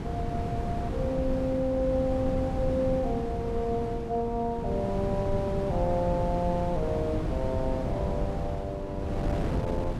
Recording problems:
wind on the microphone; below 270 Hz, SNR 2 dB

